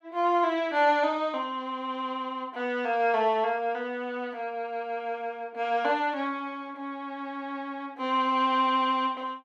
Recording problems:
none

